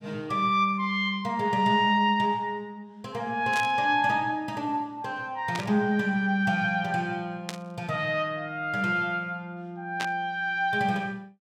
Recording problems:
static burst; 4 times, first at 3.5 s; peak -2 dB vs average level

